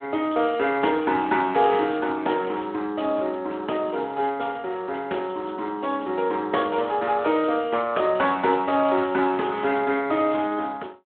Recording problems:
phone line; 240 Hz to 3.4 kHz, Speex

